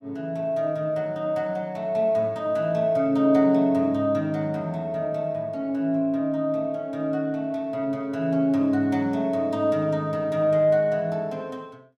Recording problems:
none

